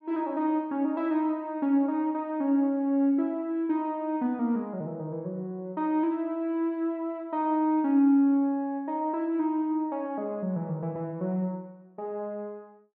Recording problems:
none

